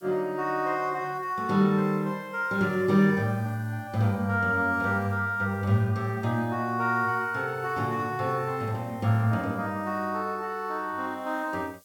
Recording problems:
hiss; slope +7 dB per octave, SNR 30 dB

